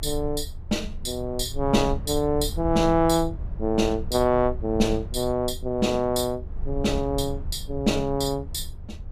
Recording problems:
low-frequency rumble; below 74 Hz, strongest tone 20 Hz, SNR 10 dB

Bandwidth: 15 kHz